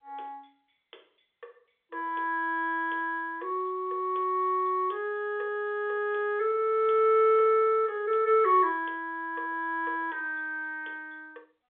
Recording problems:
telephone audio; 340 Hz to 3.6 kHz, G.711

